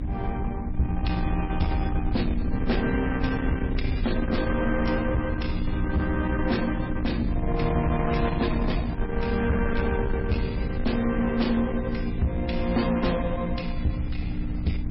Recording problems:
lossy compression; MP3, log-spectral distance 2 dB, nothing above 5.5 kHz
distorted audio; soft clipping, signal-to-distortion ratio 11 dB
hum; 60 Hz, harmonics up to 300 Hz, SNR 7 dB
wind noise; below 110 Hz, SNR 4 dB

